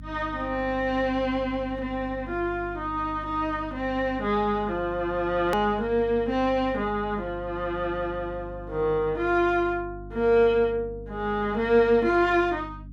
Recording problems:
hum; 50 Hz, harmonics up to 300 Hz, SNR 16 dB
click at an edit; at 5.5 s

